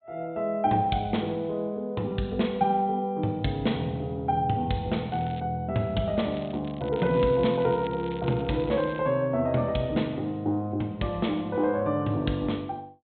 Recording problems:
treble missing; nothing above 4 kHz
crackling; at 5 s and from 6.5 to 9 s; loose cable, SNR 21 dB

